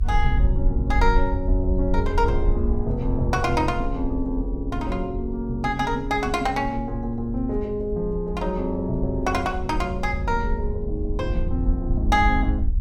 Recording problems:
rumble; below 64 Hz, SNR 3 dB

